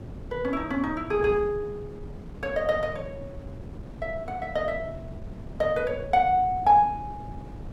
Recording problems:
wind on the microphone; below 250 Hz, SNR 14 dB

